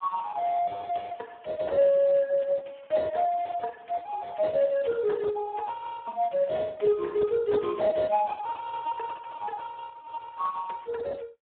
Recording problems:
telephone audio; 950 Hz to 2.8 kHz, Speex

